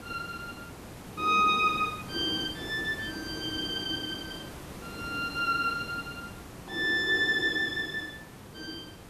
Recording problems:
background hiss; slope -5 dB per octave, SNR 15 dB

